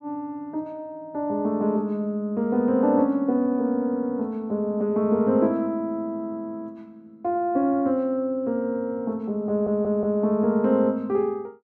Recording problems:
audio stuttering; at 9.5 s

